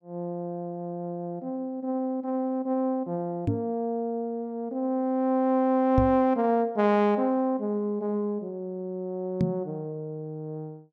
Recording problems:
microphone thump; at 3.5 s, at 6 s and at 9.5 s; peak +6 dB vs average level

